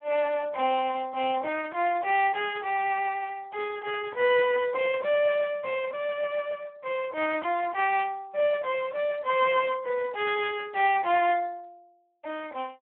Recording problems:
telephone audio; 320 Hz to 3.3 kHz, Speex

